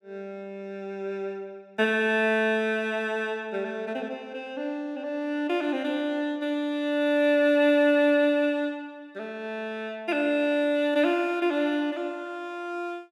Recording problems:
none

